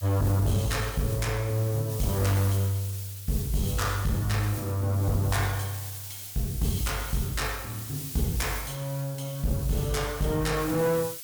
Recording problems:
distorted audio; hard clipping, uneven, signal-to-distortion ratio 11 dB
hiss; slope +5 dB per octave, SNR 10 dB

